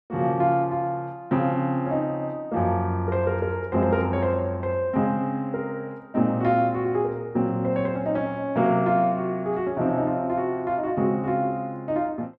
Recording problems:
none

